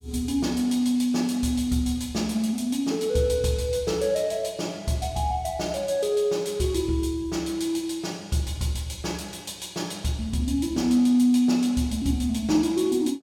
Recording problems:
none

